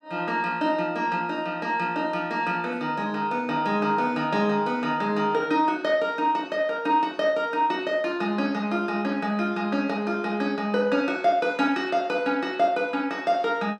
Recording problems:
none

